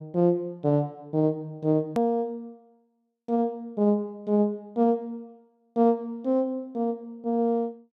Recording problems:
edit click; at 2 s

